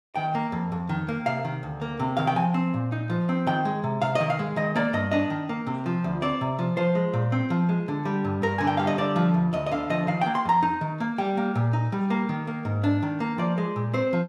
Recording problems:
none

